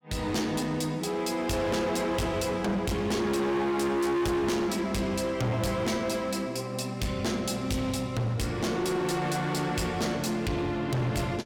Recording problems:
distorted audio; hard clipping, signal-to-distortion ratio 7 dB

